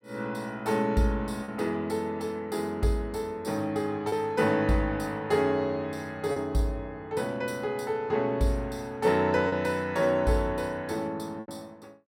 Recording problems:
packet loss; 2% of the sound replaced, filled with repeated pitch periods

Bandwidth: 16.5 kHz